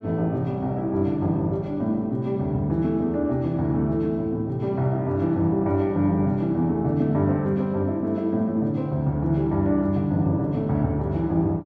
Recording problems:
none

